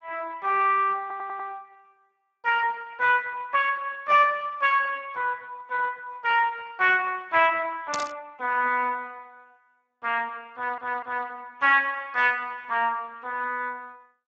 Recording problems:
codec artefacts; Speex, log-spectral distance 3 dB
audio stuttering; at 1 s and at 11 s
static burst; at 8 s; peak 0 dB vs average level

